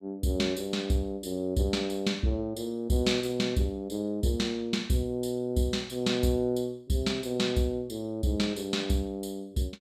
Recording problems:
none

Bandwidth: 14.5 kHz